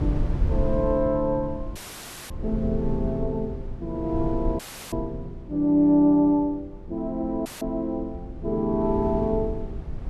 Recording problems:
rumble; below 100 Hz, SNR 9 dB
audio cutting out; at 2 s for 0.5 s, at 4.5 s and at 7.5 s; filled with static

